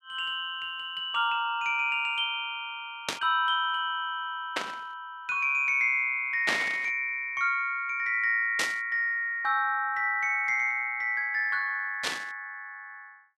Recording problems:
burst of static; 5 times, first at 3 s; peak +4 dB vs average level

